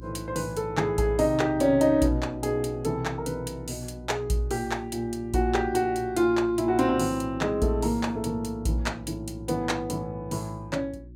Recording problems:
hum; 60 Hz, harmonics up to 360 Hz, SNR 17 dB

